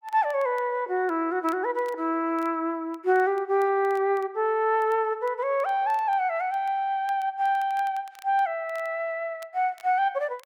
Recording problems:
crackle; vinyl, SNR 30 dB

